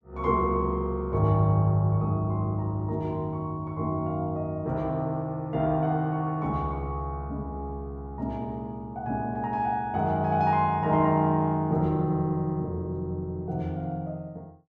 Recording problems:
none

